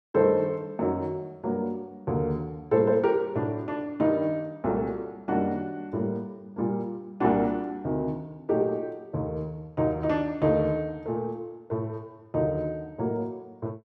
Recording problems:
none

